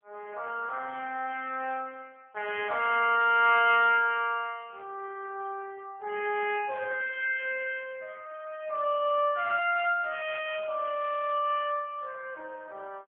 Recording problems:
telephone audio; 320 Hz to 3.3 kHz, AMR-NB

